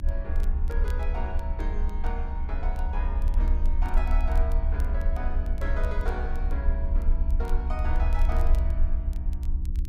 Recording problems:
hum; 60 Hz, harmonics up to 360 Hz, SNR 1 dB
low-frequency rumble; below 66 Hz, SNR -9 dB
crackling; vinyl, SNR 20 dB

